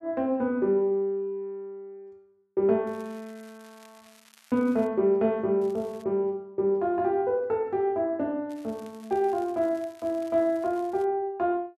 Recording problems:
crackling; from 3 to 5 s, at 5.5 s and from 8.5 to 11 s; loose cable, SNR 29 dB

